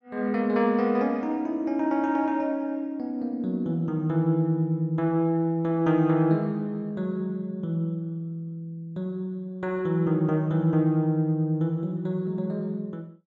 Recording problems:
none

